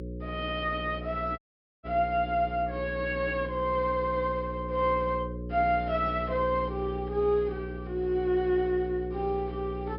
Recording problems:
low-pass filter; nothing above 5.5 kHz
mains hum; 60 Hz, harmonics up to 540 Hz, SNR 9 dB
audio cutting out; at 1.5 s

